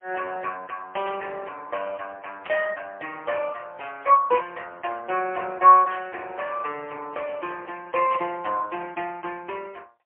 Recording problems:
phone line; 300 Hz to 3.1 kHz, AMR-NB, then MP3
burst of static; 4 times, first at 1 s; peak -7 dB vs average level

